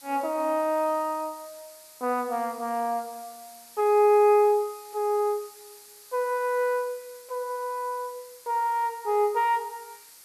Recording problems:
background hiss; slope +2 dB per octave, SNR 21 dB

